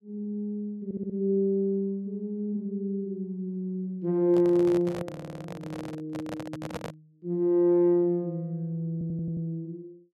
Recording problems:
audio stuttering; at 1 s, at 5 s and at 9 s
microphone handling noise; from 4.5 to 7 s; peak -3 dB vs average level

